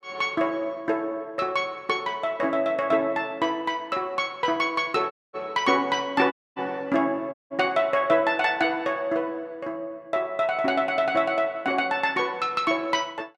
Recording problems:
dropout; at 5 s, at 6.5 s and at 7.5 s

